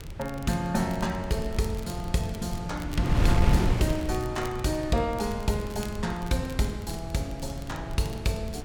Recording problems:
wind on the microphone; below 140 Hz, SNR 3 dB
crackling; vinyl, SNR 20 dB

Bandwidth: 18 kHz